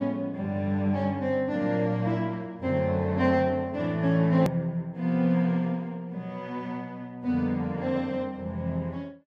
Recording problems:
click at an edit; at 4.5 s

